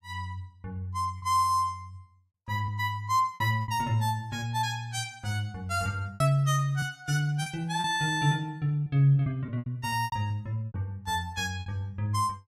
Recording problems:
lost packets; 7% of the sound replaced, filled with repeated pitch periods

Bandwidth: 15 kHz